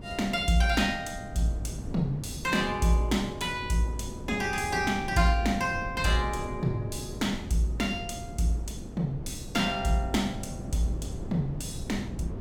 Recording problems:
wind on the microphone; below 250 Hz, SNR 10 dB

